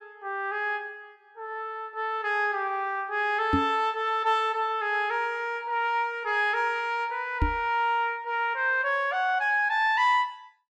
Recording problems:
microphone bump; at 3.5 s and at 7.5 s; peak +4 dB vs average level

